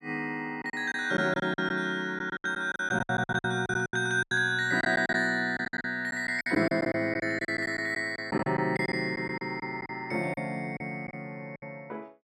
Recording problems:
packet loss; 13% of the sound replaced, filled with silence

